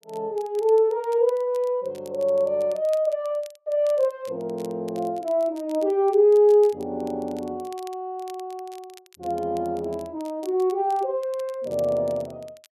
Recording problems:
crackling; vinyl, SNR 27 dB

